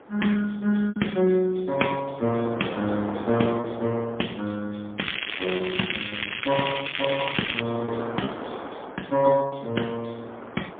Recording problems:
telephone audio; 170 Hz to 3.4 kHz, AMR-NB, then MP3
wind noise; below 1.1 kHz, SNR 11 dB
lost packets; 3% of the sound replaced, filled with repeated pitch periods
crackling; from 5 to 7.5 s; loose cable, SNR 2 dB

